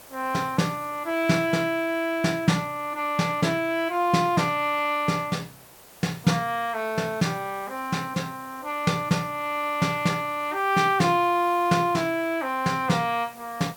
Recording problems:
hiss; SNR 21 dB

